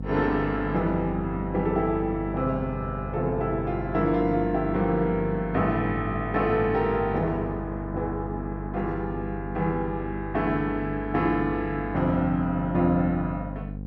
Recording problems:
hum; 50 Hz, harmonics up to 550 Hz, SNR 8 dB

